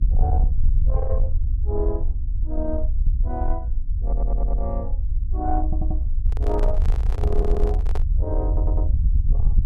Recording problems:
distortion; soft clipping, signal-to-distortion ratio 12 dB
hum; 50 Hz, harmonics up to 300 Hz, SNR 17 dB
low-frequency rumble; below 62 Hz, SNR -7 dB
audio stuttering; 4 times, first at 4 s
microphone handling noise; from 6.5 to 8 s; peak +1 dB vs average level

